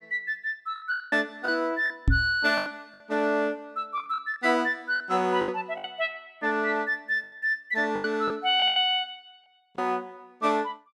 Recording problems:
packet loss; 10% of the sound replaced, filled with the last packet
microphone bump; at 2 s; peak +7 dB vs average level

